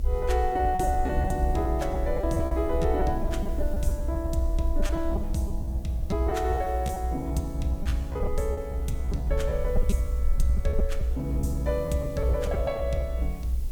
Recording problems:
background hiss; slope +3 dB per octave, SNR 24 dB
rumble; below 62 Hz, SNR 1 dB
wind noise; below 390 Hz, SNR 19 dB
lost packets; 10% of the sound replaced, filled with repeated pitch periods

